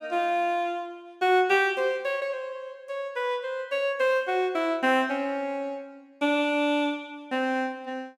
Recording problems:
none

